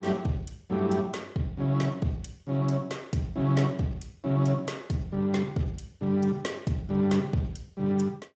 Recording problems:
lossy compression; Speex, log-spectral distance 3 dB, nothing above 7.3 kHz

